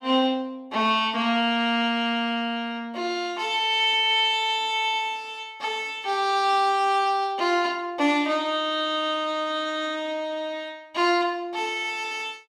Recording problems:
none

